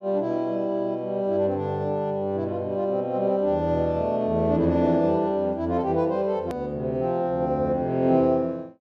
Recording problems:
edit click; at 6.5 s

